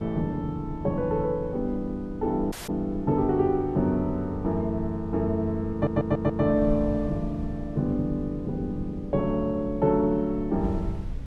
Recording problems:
wind on the microphone; below 90 Hz, SNR 13 dB
audio cutting out; at 2.5 s
audio stuttering; at 5.5 s

